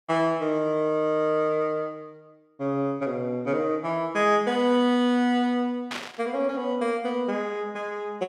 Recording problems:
static burst; at 6 s; peak -3 dB vs average level

